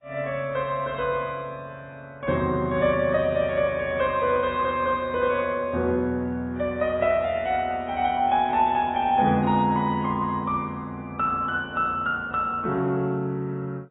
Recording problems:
lossy codec; MP2, then AAC, log-spectral distance 2 dB, nothing above 3.2 kHz

